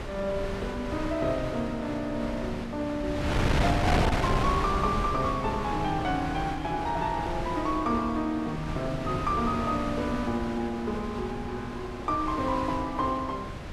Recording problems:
wind noise; below 910 Hz, SNR 3 dB

